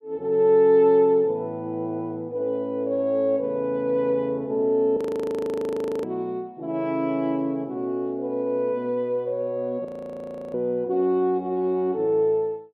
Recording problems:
audio freezing; at 5 s for 1 s and at 10 s for 0.5 s

